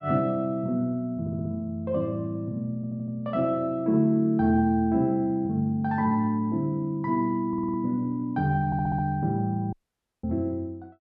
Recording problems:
audio stuttering; 4 times, first at 1 s
audio cutting out; at 9.5 s for 0.5 s

